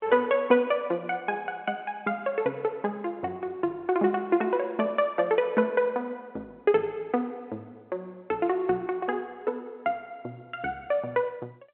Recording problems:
telephone audio; 280 Hz to 3.3 kHz, G.711

